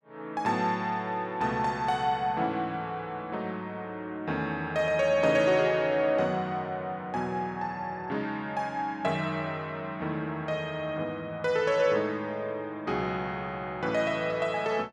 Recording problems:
none

